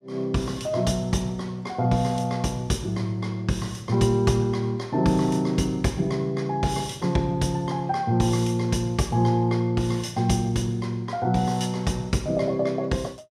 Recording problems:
none

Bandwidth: 14 kHz